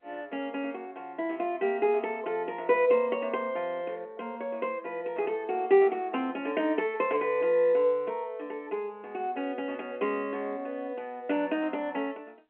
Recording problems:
phone line; 240 Hz to 3.1 kHz, G.711

